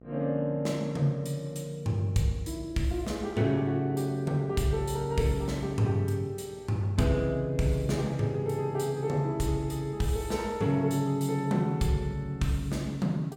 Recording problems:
hum; 60 Hz, harmonics up to 1.3 kHz, SNR 26 dB

